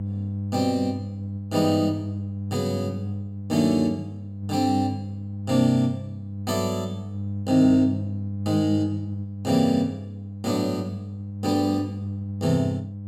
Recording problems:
hum; 50 Hz, harmonics up to 500 Hz, SNR 8 dB

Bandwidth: 16 kHz